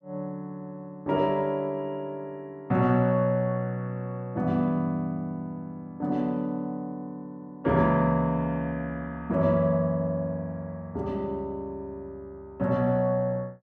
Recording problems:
none

